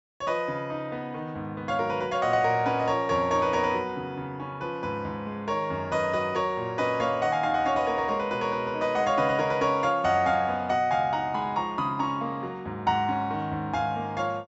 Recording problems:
low-pass filter; nothing above 8 kHz

